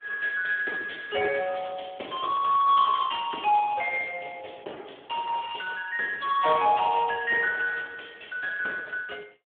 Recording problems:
telephone audio; 320 Hz to 2.8 kHz, Speex

